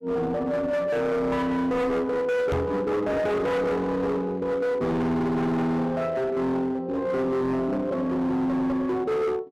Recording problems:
distorted audio; hard clipping, signal-to-distortion ratio 8 dB
knock on the microphone; at 2.5 s; peak +3 dB vs average level

